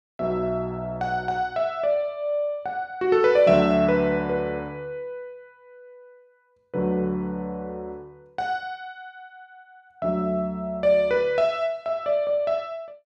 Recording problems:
none

